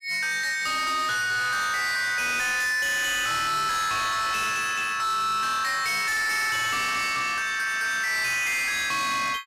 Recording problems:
distortion; hard clipping, signal-to-distortion ratio 8 dB

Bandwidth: 15 kHz